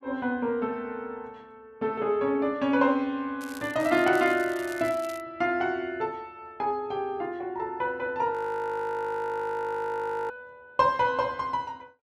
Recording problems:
crackling; from 3.5 to 5 s; loose cable, SNR 19 dB
audio freezing; at 8.5 s for 2 s

